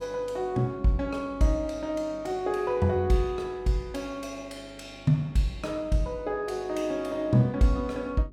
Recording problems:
mains hum; 50 Hz, harmonics up to 400 Hz, SNR 24 dB

